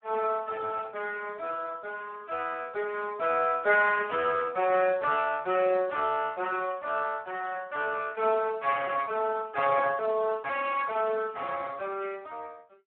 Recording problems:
telephone audio; 340 Hz to 2.6 kHz, Speex

